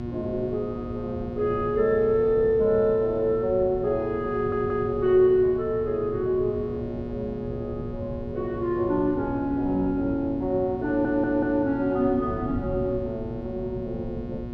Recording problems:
hum; 60 Hz, harmonics up to 1.4 kHz, SNR 10 dB
wind on the microphone; below 180 Hz, SNR 14 dB
audio stuttering; at 4.5 s and at 11 s

